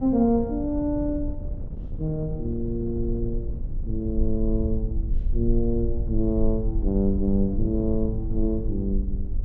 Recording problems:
low-frequency rumble; below 50 Hz, strongest tone 24 Hz, SNR 5 dB
wind on the microphone; below 170 Hz, SNR 11 dB

